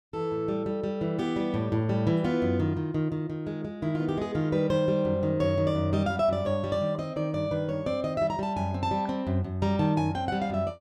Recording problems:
none

